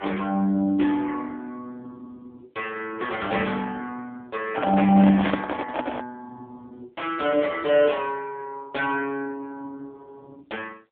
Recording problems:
telephone audio; 220 Hz to 3.6 kHz, AMR-NB
microphone handling noise; from 4.5 to 6 s; peak +2 dB vs average level

